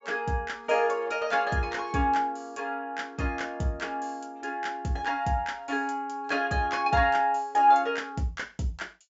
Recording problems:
low-pass filter; nothing above 8 kHz

